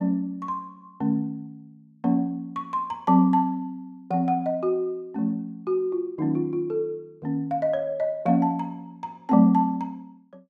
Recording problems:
none

